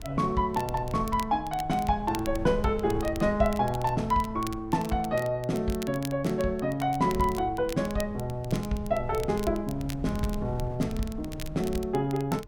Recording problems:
wind on the microphone; below 100 Hz, SNR 13 dB
crackling; vinyl, SNR 18 dB

